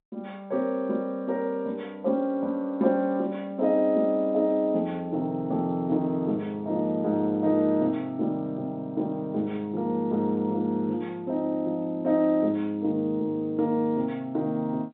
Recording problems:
phone line; 170 Hz to 3.7 kHz, G.711

